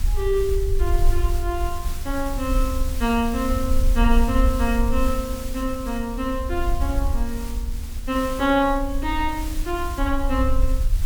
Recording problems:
hiss; SNR 13 dB
low-frequency rumble; below 56 Hz, SNR 2 dB

